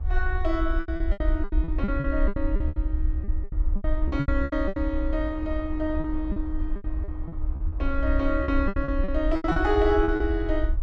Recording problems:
rumble; below 62 Hz, SNR 1 dB
wind on the microphone; below 820 Hz, SNR 22 dB
lost packets; 17% of the sound replaced, filled with repeated pitch periods

